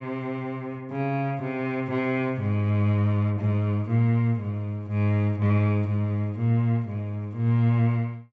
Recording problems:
low-pass filter; nothing above 7.6 kHz

